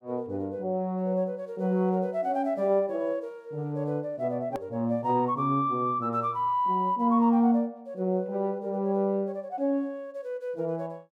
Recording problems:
edit click; at 4.5 s

